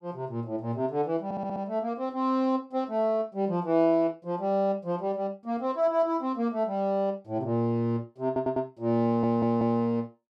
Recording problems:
stutter; at 1 s, at 8.5 s and at 9 s

